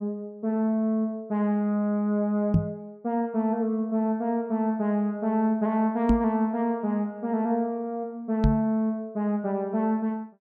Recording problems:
knock on the microphone; at 2.5 s, at 6 s and at 8.5 s; peak +9 dB vs average level

